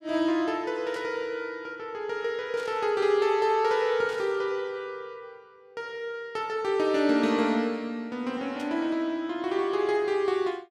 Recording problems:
static burst; 4 times, first at 1 s; peak -13 dB vs average level

